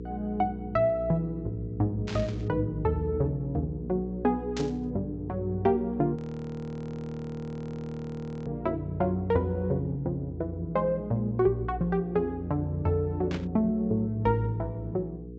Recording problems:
treble missing; nothing above 8 kHz
hum; 60 Hz, harmonics up to 480 Hz, SNR 11 dB
static burst; at 2 s, at 4.5 s and at 13 s; peak -4 dB vs average level
audio freezing; at 6 s for 2.5 s

